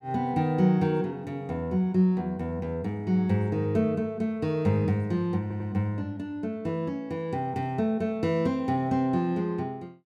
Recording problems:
stutter; at 5.5 s

